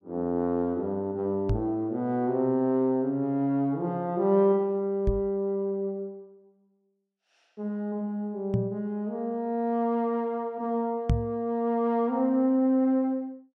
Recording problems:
knock on the microphone; 4 times, first at 1.5 s; peak +6 dB vs average level

